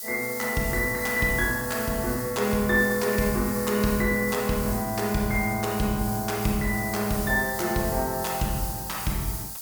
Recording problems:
hiss; SNR 7 dB

